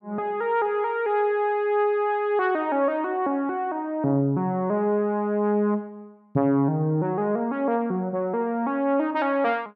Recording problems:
none

